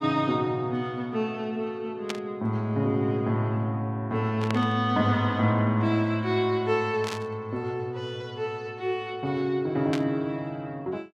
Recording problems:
burst of static; 4 times, first at 2 s; peak -1 dB vs average level

